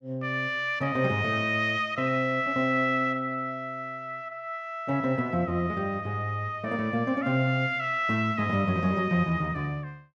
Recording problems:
none

